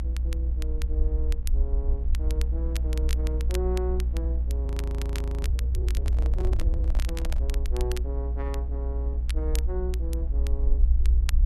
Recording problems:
mains hum; 60 Hz, harmonics up to 840 Hz, SNR 6 dB
low-frequency rumble; below 62 Hz, strongest tone 60 Hz, SNR -11 dB
crackle; vinyl, SNR 6 dB
audio freezing; at 4.5 s for 1 s
handling noise; from 6 to 7.5 s; peak +2 dB vs average level

